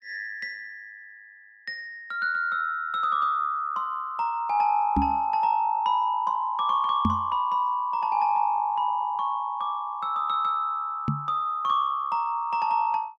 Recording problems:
microphone thump; at 5 s, at 7 s and at 11 s; peak +4 dB vs average level

